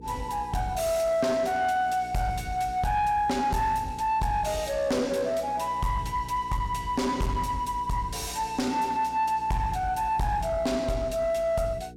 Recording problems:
distortion; soft clipping, signal-to-distortion ratio 10 dB
mains hum; 60 Hz, harmonics up to 480 Hz, SNR 19 dB

